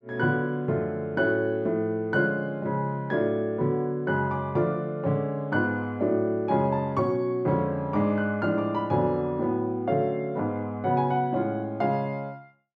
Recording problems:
none

